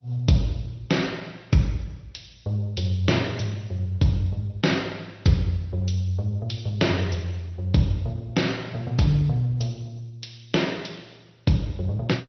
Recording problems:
lossy codec; MP2, then Opus, log-spectral distance 4 dB, nothing above 5.8 kHz

